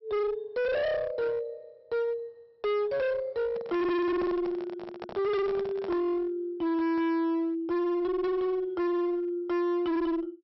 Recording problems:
low-pass filter; nothing above 5.6 kHz
distorted audio; hard clipping, uneven, signal-to-distortion ratio 6 dB
handling noise; from 3.5 to 6 s; peak -5 dB vs average level

